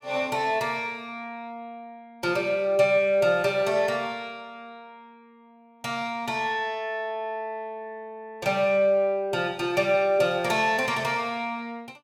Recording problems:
none

